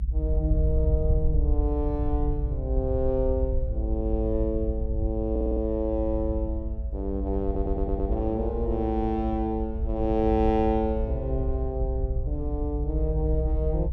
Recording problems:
rumble; below 62 Hz, SNR 1 dB
audio stuttering; at 5.5 s and at 7.5 s

